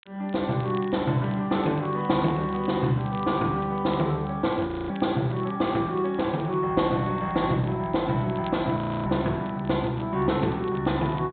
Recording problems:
treble cut off; nothing above 4 kHz
crackle; vinyl, SNR 26 dB
frozen audio; at 4.5 s and at 9 s

